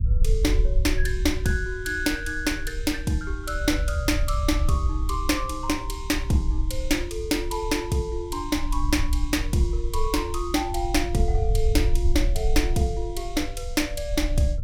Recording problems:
low-frequency rumble; below 60 Hz, SNR 3 dB

